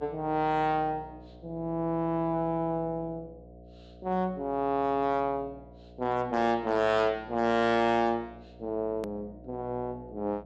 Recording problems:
treble cut off; nothing above 8 kHz
distortion; hard clipping, uneven, signal-to-distortion ratio 12 dB
electrical hum; 60 Hz, harmonics up to 720 Hz, SNR 21 dB
click at an edit; at 9 s

